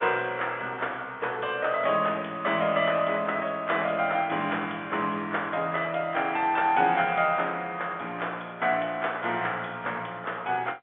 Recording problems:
telephone audio; 130 Hz to 3.5 kHz, G.711

